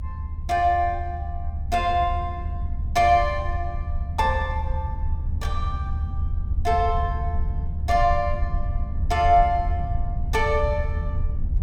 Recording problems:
rumble; below 78 Hz, SNR 4 dB

